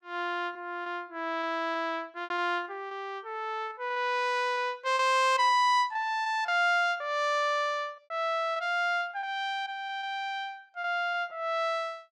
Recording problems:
lost packets; 7% of the sound replaced, filled with repeated pitch periods

